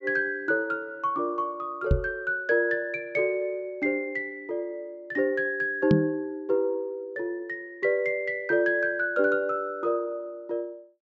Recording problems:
low-pass filter; nothing above 8 kHz
microphone bump; at 2 s and at 6 s; peak +8 dB vs average level

